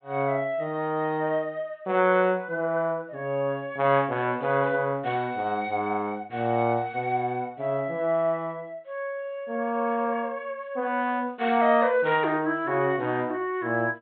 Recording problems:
treble missing; nothing above 4 kHz

